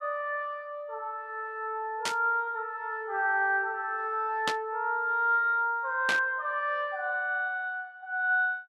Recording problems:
static burst; at 2 s, at 4.5 s and at 6 s; peak +3 dB vs average level

